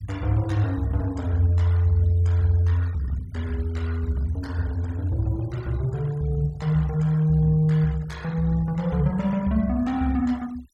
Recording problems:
denoising artefacts; signal-to-artefact ratio 25 dB

